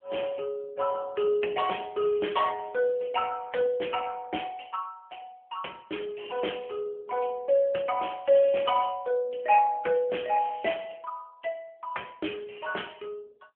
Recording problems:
phone line; 260 Hz to 3.2 kHz, AMR-NB

